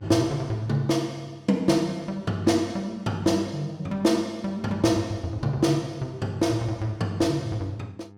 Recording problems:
hum; 50 Hz, harmonics up to 1.3 kHz, SNR 24 dB

